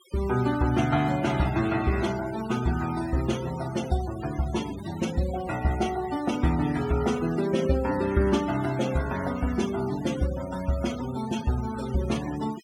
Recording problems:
denoising artefacts; signal-to-artefact ratio 15 dB

